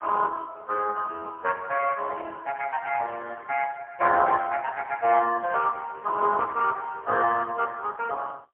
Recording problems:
telephone audio; 340 Hz to 2.8 kHz, AMR-NB, then MP3

